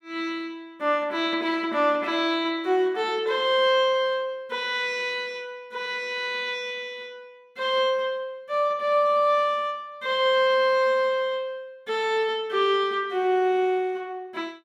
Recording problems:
none

